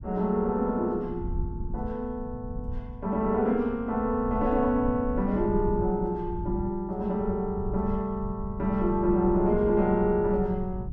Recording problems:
rumble; below 110 Hz, SNR 11 dB

